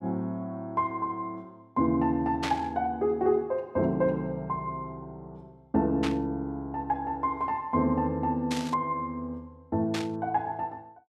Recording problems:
static burst; 4 times, first at 2.5 s; peak 0 dB vs average level

